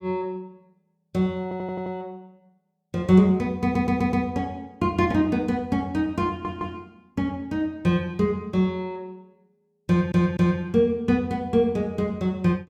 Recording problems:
audio stuttering; 4 times, first at 1.5 s

